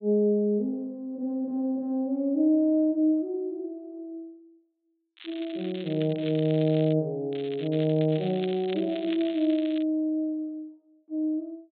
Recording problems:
low-pass filter; nothing above 4 kHz
crackling; from 5 to 7 s and from 7.5 to 10 s; loose cable, SNR 17 dB

